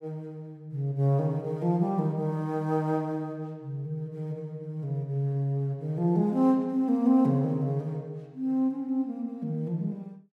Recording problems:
none

